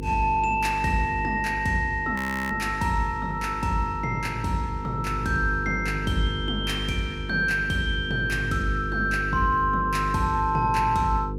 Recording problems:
hum; 50 Hz, harmonics up to 500 Hz, SNR 8 dB
frozen audio; at 2 s

